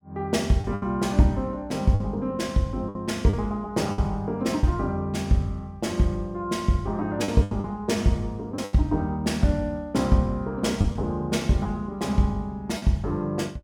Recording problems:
packet loss; 5% of the sound replaced, filled with the last packet

